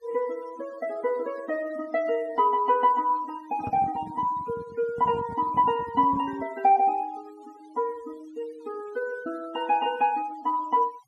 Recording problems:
denoising artefacts; signal-to-artefact ratio 23 dB
handling noise; from 3.5 to 6.5 s; peak -5 dB vs average level

